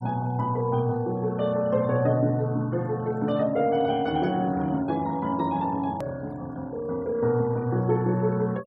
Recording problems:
noise reduction artefacts; signal-to-artefact ratio 25 dB
edit click; at 6 s

